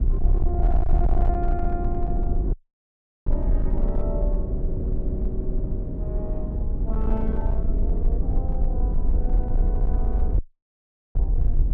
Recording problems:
distortion; hard clipping, signal-to-distortion ratio 11 dB
rumble; below 52 Hz, SNR -8 dB
wind noise; below 260 Hz, SNR -1 dB
audio cutting out; at 2.5 s for 0.5 s and at 10 s for 1 s

